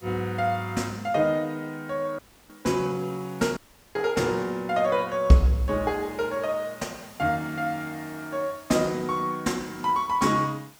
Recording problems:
background hiss; slope -2 dB per octave, SNR 24 dB
audio cutting out; at 2 s and at 3.5 s

